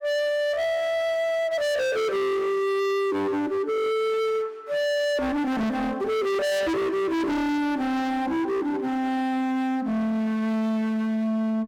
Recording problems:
distortion; hard clipping, signal-to-distortion ratio 6 dB

